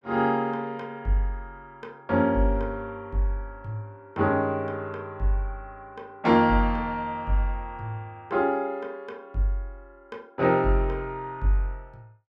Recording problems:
none

